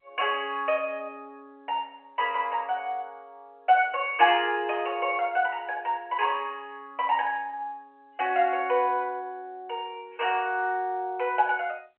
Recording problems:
phone line; 300 Hz to 3.1 kHz, G.711

